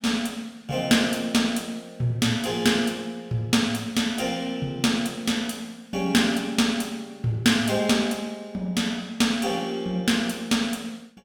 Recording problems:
none

